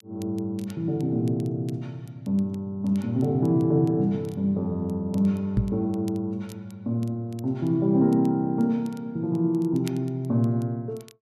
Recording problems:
crackling; vinyl, SNR 28 dB
microphone thump; at 5.5 s; peak +6 dB vs average level

